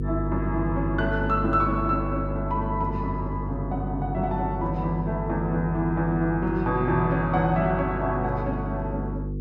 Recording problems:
electrical hum; 50 Hz, harmonics up to 500 Hz, SNR 4 dB

